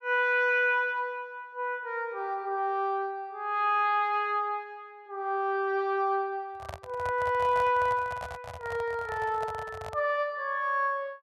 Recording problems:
microphone handling noise; from 6.5 to 10 s; peak -7 dB vs average level

